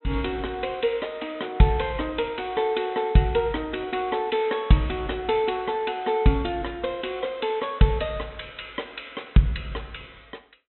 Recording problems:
low-pass filter; nothing above 4 kHz

